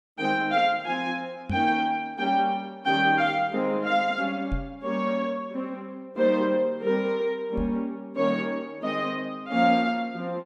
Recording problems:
microphone thump; at 1.5 s, at 4.5 s and at 7.5 s; peak -1 dB vs average level

